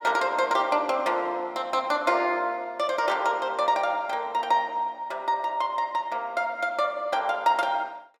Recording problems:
none

